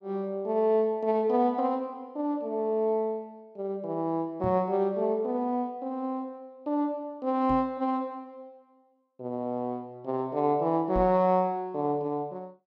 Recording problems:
knock on the microphone; at 4.5 s, at 7.5 s and at 11 s; peak -2 dB vs average level

